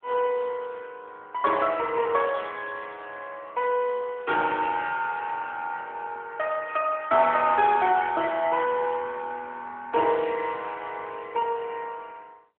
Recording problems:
phone line; 280 Hz to 3.4 kHz, AMR-NB

